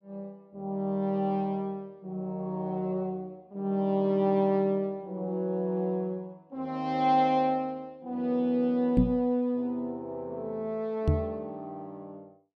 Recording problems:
microphone bump; at 9 s and at 11 s; peak +8 dB vs average level

